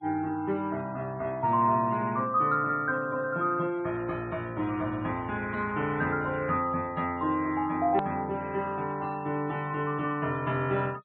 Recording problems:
low-pass filter; nothing above 4 kHz
noise reduction artefacts; signal-to-artefact ratio 24 dB
edit click; at 8 s

